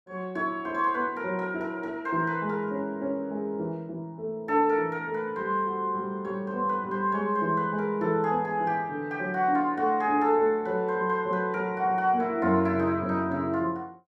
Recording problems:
none

